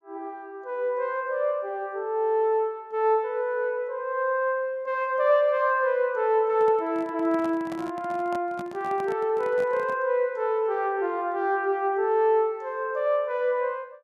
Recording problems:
handling noise; from 6.5 to 10 s; peak -10 dB vs average level

